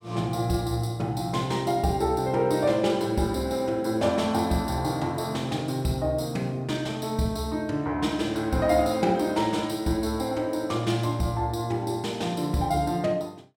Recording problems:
none

